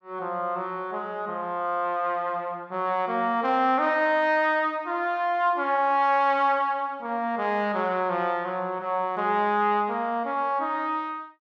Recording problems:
none

